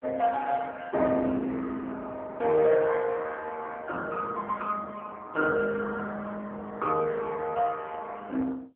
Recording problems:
phone line; 220 Hz to 3.8 kHz, AMR-NB

